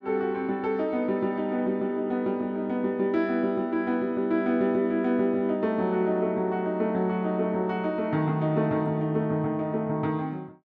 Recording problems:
none

